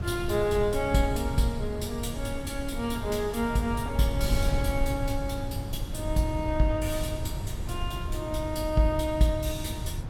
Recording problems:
wind noise; below 120 Hz, SNR 5 dB

